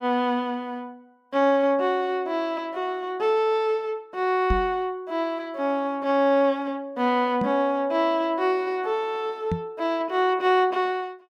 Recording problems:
microphone thump; at 4.5 s, at 7.5 s and at 9.5 s; peak +2 dB vs average level

